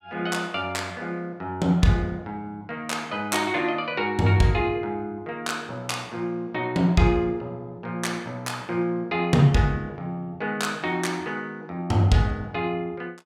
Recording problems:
none

